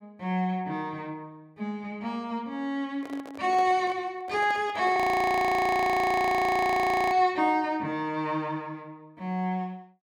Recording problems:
microphone handling noise; from 3 to 7 s; peak -9 dB vs average level
frozen audio; at 5 s for 2 s

